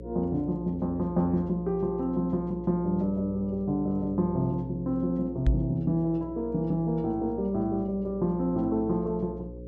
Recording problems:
electrical hum; 60 Hz, harmonics up to 540 Hz, SNR 14 dB
knock on the microphone; at 5.5 s; peak +6 dB vs average level

